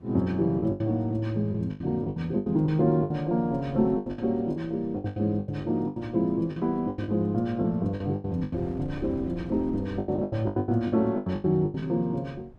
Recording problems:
wind on the microphone; below 240 Hz, SNR 19 dB
packet loss; 16% of the sound replaced, filled with the last packet

